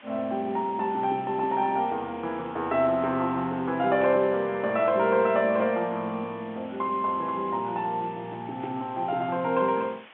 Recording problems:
telephone audio; 190 Hz to 3.6 kHz, G.711
background hiss; SNR 23 dB
burst of static; at 4 s and at 8.5 s; peak -15 dB vs average level

